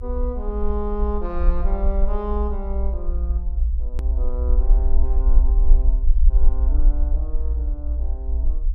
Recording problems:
low-frequency rumble; below 56 Hz, SNR -9 dB
click at an edit; at 4 s

